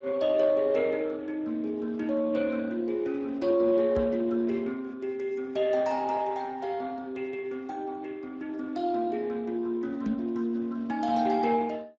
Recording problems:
lossy codec; Speex, log-spectral distance 3 dB
knock on the microphone; at 4 s and at 10 s; peak +3 dB vs average level

